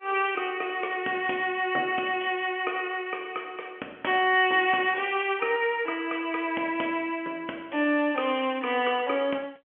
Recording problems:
phone line; 240 Hz to 3.3 kHz, G.711

